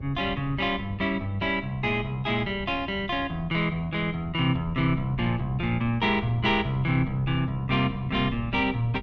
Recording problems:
wind on the microphone; below 160 Hz, SNR 14 dB

